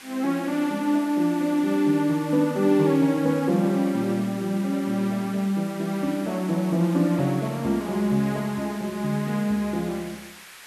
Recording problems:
hiss; SNR 18 dB

